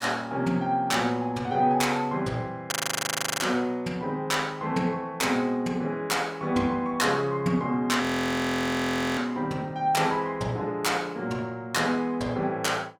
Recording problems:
audio freezing; at 2.5 s for 0.5 s and at 8 s for 1 s

